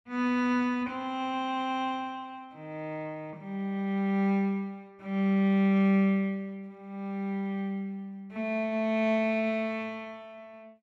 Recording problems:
none

